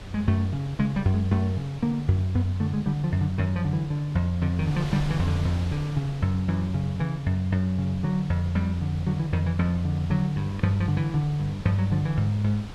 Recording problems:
wind noise; below 620 Hz, SNR 15 dB

